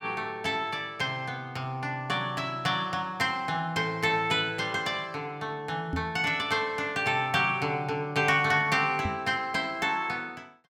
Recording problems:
knock on the microphone; at 6 s and at 9 s; peak -1 dB vs average level

